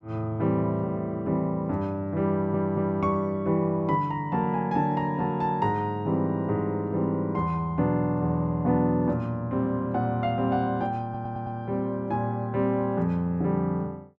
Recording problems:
stutter; at 2.5 s and at 11 s

